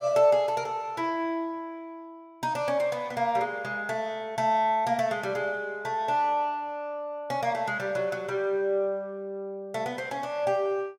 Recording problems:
none

